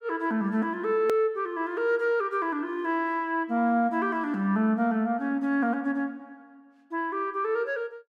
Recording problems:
hard cut with a click; at 1 s

